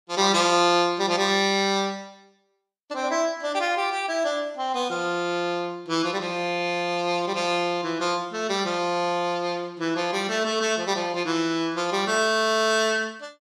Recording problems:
none

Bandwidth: 13 kHz